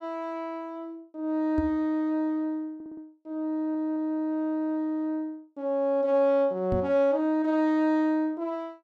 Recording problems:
microphone bump; at 1.5 s and at 6.5 s; peak -1 dB vs average level
audio stuttering; at 3 s and at 3.5 s

